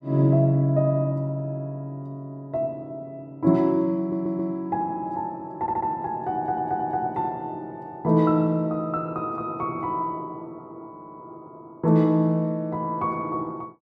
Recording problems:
stutter; 4 times, first at 4 s

